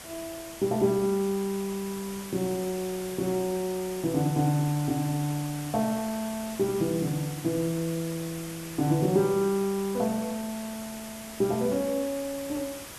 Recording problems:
background hiss; slope -2 dB per octave, SNR 12 dB

